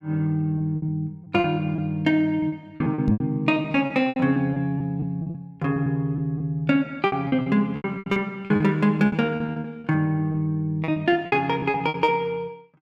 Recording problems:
lost packets; 16% of the sound replaced, filled with repeated pitch periods
microphone thump; at 3 s; peak +4 dB vs average level

